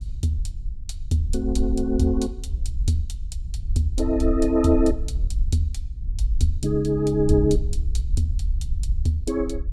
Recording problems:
low-frequency rumble; below 62 Hz, SNR 5 dB

